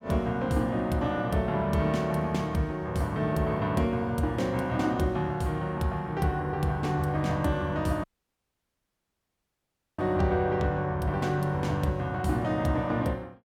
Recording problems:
dropout; at 8 s for 2 s

